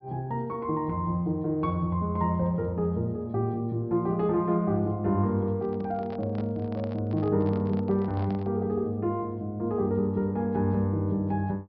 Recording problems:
treble cut off; nothing above 5.5 kHz
microphone handling noise; from 5.5 to 8.5 s; peak -11 dB vs average level

